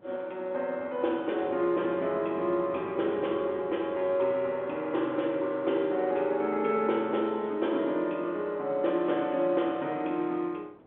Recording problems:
phone line; 240 Hz to 3.4 kHz, G.711
wind noise; below 640 Hz, SNR 22 dB

